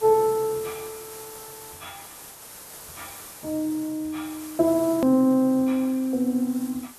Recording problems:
hiss; slope -2 dB per octave, SNR 17 dB
hard cut with a click; at 5 s

